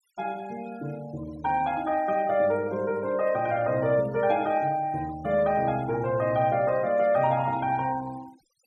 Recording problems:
noise reduction artefacts; signal-to-artefact ratio 23 dB

